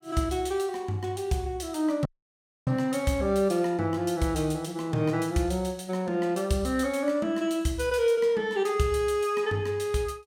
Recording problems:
dropout; at 2 s for 0.5 s

